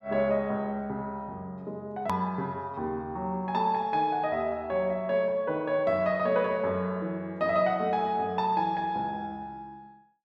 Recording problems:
hard cut with a click; at 2 s

